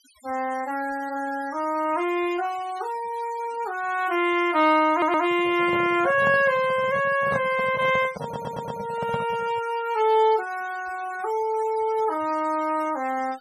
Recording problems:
denoising artefacts; signal-to-artefact ratio 20 dB
stutter; at 5 s and at 8 s
microphone handling noise; from 5 to 9.5 s; peak -4 dB vs average level

